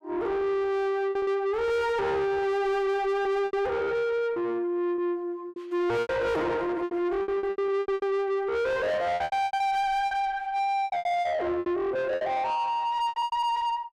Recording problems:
distorted audio; soft clipping, signal-to-distortion ratio 7 dB
packet loss; 12% of the sound replaced, filled with repeated pitch periods

